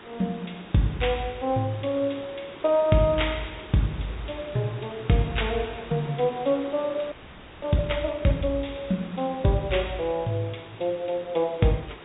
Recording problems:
low-pass filter; nothing above 4 kHz
hiss; SNR 16 dB
audio freezing; at 7 s for 0.5 s

